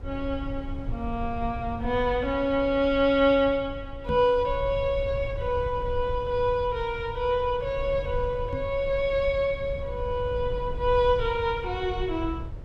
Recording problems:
rumble; below 92 Hz, SNR 11 dB
microphone thump; at 4 s and at 8.5 s; peak -2 dB vs average level

